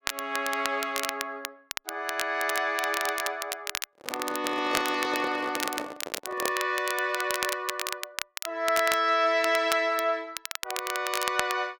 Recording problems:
crackling; vinyl, SNR 6 dB
microphone handling noise; from 4 to 6.5 s; peak -1 dB vs average level

